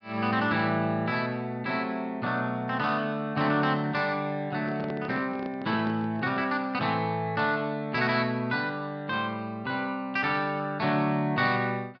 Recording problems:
treble cut off; nothing above 5.5 kHz
microphone handling noise; from 4.5 to 6.5 s; peak -5 dB vs average level

